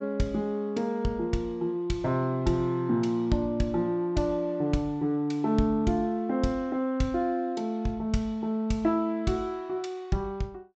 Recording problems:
treble missing; nothing above 8 kHz

